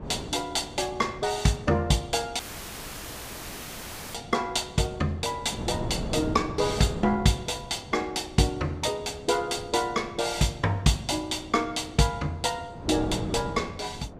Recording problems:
wind noise; below 430 Hz, SNR 11 dB
dropout; at 2.5 s for 1.5 s; filled with static

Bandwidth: 15 kHz